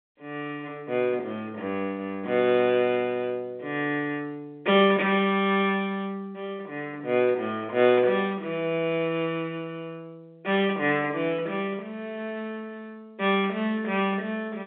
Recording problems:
telephone audio; 220 Hz to 3.7 kHz, G.711

